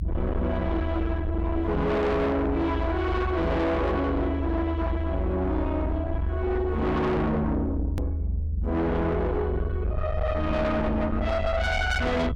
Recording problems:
distorted audio; soft clipping, signal-to-distortion ratio 7 dB
rumble; below 130 Hz, SNR 3 dB
click at an edit; at 8 s

